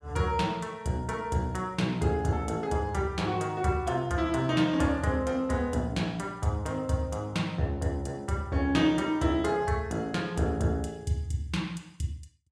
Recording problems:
none

